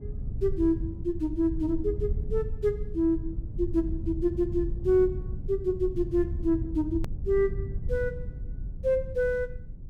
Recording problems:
low-frequency rumble; below 94 Hz, SNR 7 dB
click at an edit; at 7 s

